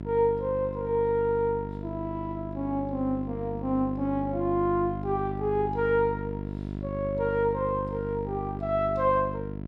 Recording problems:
hum; 50 Hz, harmonics up to 750 Hz, SNR 7 dB

